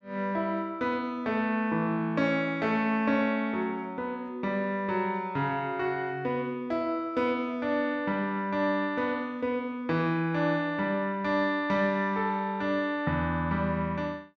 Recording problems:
none

